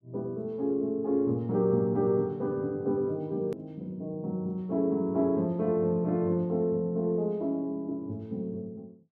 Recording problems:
click at an edit; at 3.5 s

